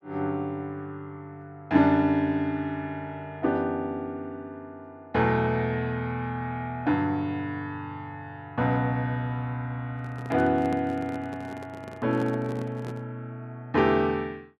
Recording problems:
microphone handling noise; from 10 to 13 s; peak -5 dB vs average level

